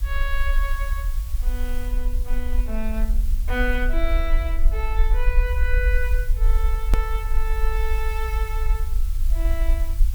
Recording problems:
background hiss; slope +1 dB per octave, SNR 13 dB
rumble; below 48 Hz, SNR -6 dB
edit click; at 7 s

